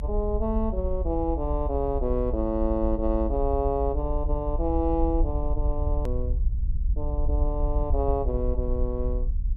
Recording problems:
low-frequency rumble; below 64 Hz, SNR 1 dB
click at an edit; at 6 s

